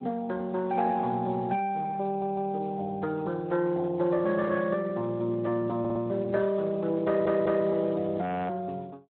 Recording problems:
telephone audio; 260 Hz to 3.8 kHz, Speex
audio stuttering; at 2 s, at 6 s and at 7 s
frozen audio; at 8 s

